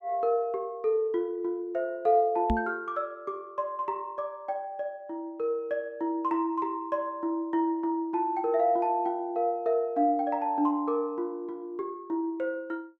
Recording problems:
microphone bump; at 2.5 s; peak +4 dB vs average level

